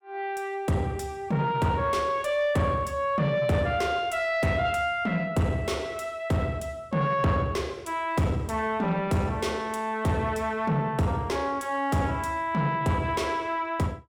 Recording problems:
distortion; soft clipping, signal-to-distortion ratio 11 dB

